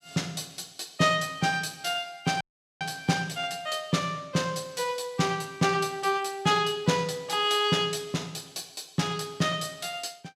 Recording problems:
audio cutting out; at 2.5 s

